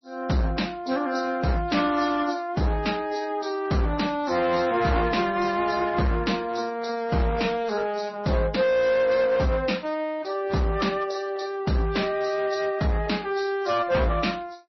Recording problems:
codec artefacts; AAC, then MP3, log-spectral distance 4 dB, nothing above 5.8 kHz
distortion; hard clipping, signal-to-distortion ratio 11 dB

